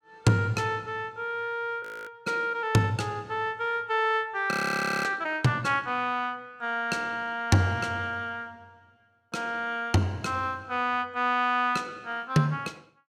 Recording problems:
audio freezing; at 2 s and at 4.5 s for 0.5 s

